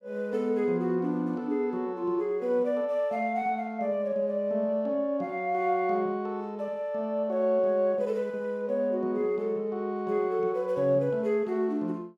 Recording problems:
none

